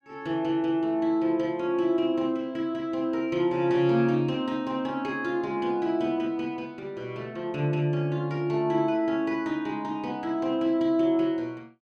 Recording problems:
none

